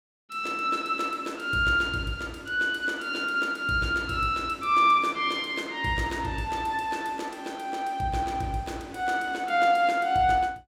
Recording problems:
none

